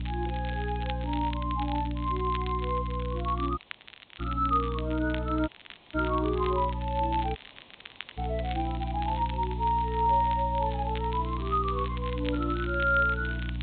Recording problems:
low-pass filter; nothing above 4 kHz
hum; 60 Hz, harmonics up to 300 Hz, SNR 5 dB
hiss; SNR 24 dB
crackling; vinyl, SNR 16 dB
audio cutting out; at 3.5 s for 0.5 s, at 5.5 s and at 7.5 s for 1 s

